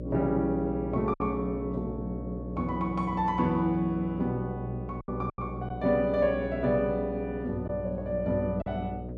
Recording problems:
hum; 60 Hz, harmonics up to 600 Hz, SNR 9 dB
packet loss; 3% of the sound replaced, filled with silence

